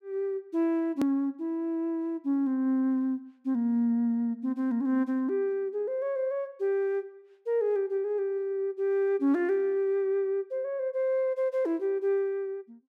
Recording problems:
hard cut with a click; at 1 s

